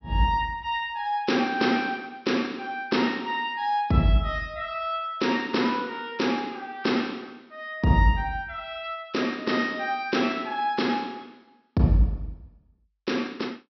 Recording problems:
treble missing; nothing above 5.7 kHz

